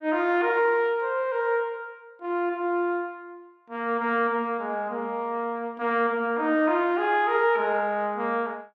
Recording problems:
none

